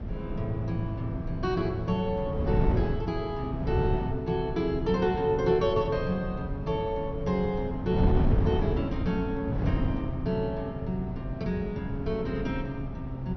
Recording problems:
treble missing; nothing above 6 kHz
wind on the microphone; below 200 Hz, SNR 3 dB

